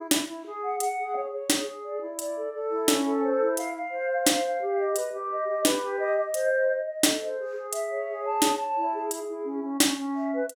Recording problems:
none

